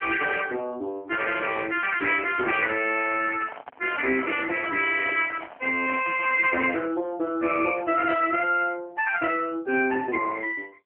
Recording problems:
phone line; 220 Hz to 3.3 kHz, AMR-NB
microphone handling noise; from 3 to 6.5 s; peak -9 dB vs average level

